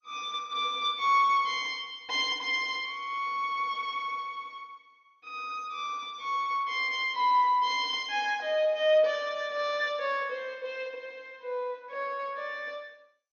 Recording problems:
lossy compression; MP2, log-spectral distance 2 dB, nothing above 5.8 kHz

